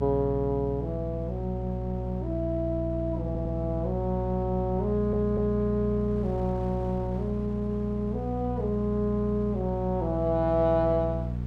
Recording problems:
mains hum; 60 Hz, harmonics up to 480 Hz, SNR 4 dB
wind noise; below 600 Hz, SNR 21 dB
audio stuttering; at 3.5 s and at 5 s

